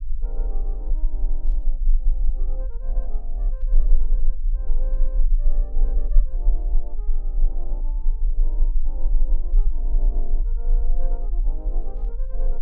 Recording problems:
low-frequency rumble; below 32 Hz, strongest tone 18 Hz, SNR -20 dB
burst of static; 5 times, first at 1.5 s; peak -15 dB vs average level

